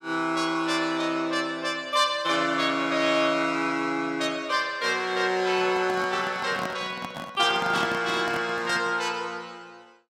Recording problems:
handling noise; from 5.5 to 9 s; peak -4 dB vs average level

